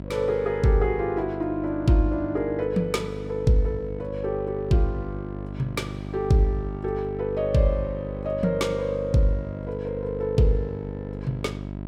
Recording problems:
hum; 50 Hz, harmonics up to 1 kHz, SNR 9 dB

